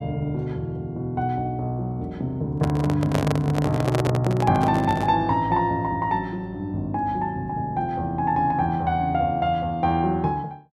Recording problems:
handling noise; from 2.5 to 5 s; peak +2 dB vs average level

